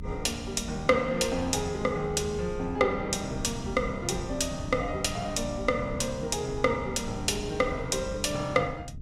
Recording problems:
low-frequency rumble; below 150 Hz, SNR 12 dB

